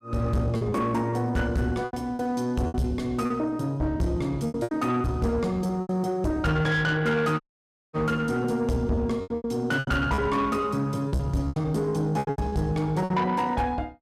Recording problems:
distortion; soft clipping, signal-to-distortion ratio 10 dB
packet loss; 11% of the sound replaced, filled with repeated pitch periods
dropout; at 7.5 s for 0.5 s

